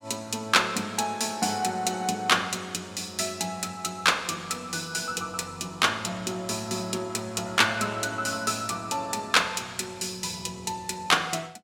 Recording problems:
none

